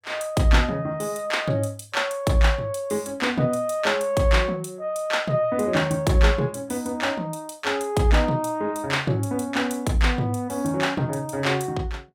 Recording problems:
none

